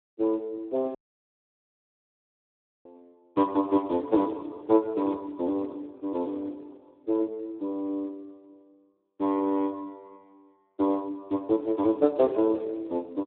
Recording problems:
phone line; 260 Hz to 2.7 kHz, Speex
dropout; at 1 s for 2 s

